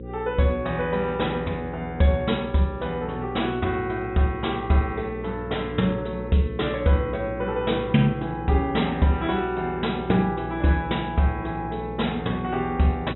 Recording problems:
treble missing; nothing above 3.9 kHz
hum; 60 Hz, harmonics up to 540 Hz, SNR 12 dB

